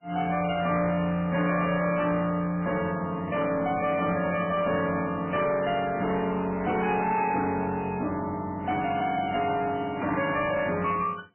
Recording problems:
lossy compression; MP3, log-spectral distance 4 dB, nothing above 2.5 kHz
distorted audio; soft clipping, signal-to-distortion ratio 11 dB

